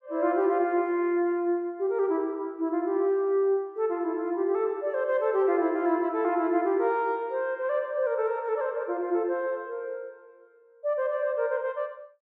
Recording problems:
none

